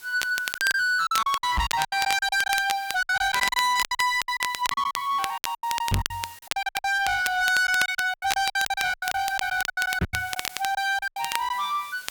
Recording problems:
distorted audio; soft clipping, signal-to-distortion ratio 7 dB
background hiss; slope +1 dB per octave, SNR 20 dB
crackling; vinyl, SNR 8 dB
lost packets; 19% of the sound replaced, filled with silence
knock on the microphone; at 1.5 s, at 6 s and at 10 s; peak +4 dB vs average level

